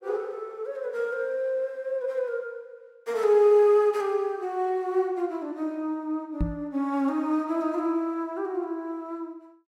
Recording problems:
knock on the microphone; at 6.5 s; peak +2 dB vs average level

